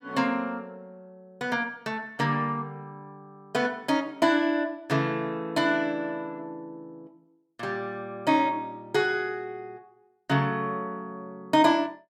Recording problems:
none

